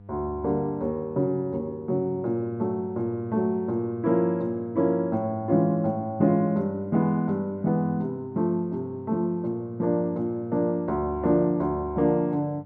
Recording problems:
electrical hum; 50 Hz, harmonics up to 700 Hz, SNR 21 dB

